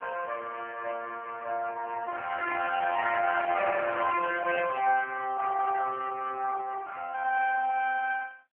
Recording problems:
telephone audio; 280 Hz to 2.3 kHz, AMR-NB

